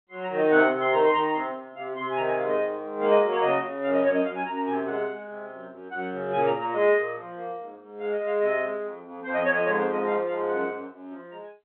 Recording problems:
telephone audio; 150 Hz to 3.7 kHz, G.711

